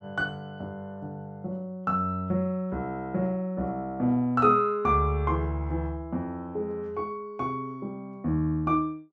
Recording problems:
none

